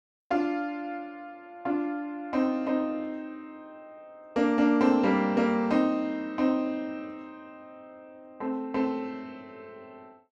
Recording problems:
none

